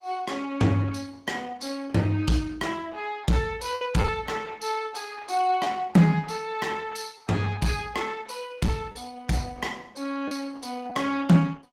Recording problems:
codec artefacts; Opus, log-spectral distance 4 dB, nothing above 19 kHz
distorted audio; hard clipping, signal-to-distortion ratio 11 dB
lost packets; 2% of the sound replaced, filled with the last packet

